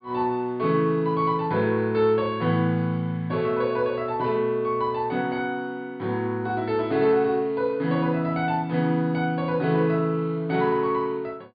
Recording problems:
low-pass filter; nothing above 4.9 kHz

